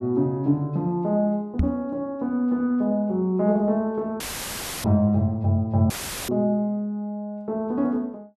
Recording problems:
knock on the microphone; at 1.5 s; peak +5 dB vs average level
audio cutting out; at 4 s for 0.5 s and at 6 s; filled with static

